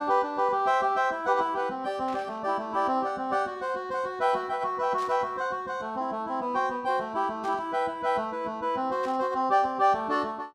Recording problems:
burst of static; 4 times, first at 2 s; peak -14 dB vs average level

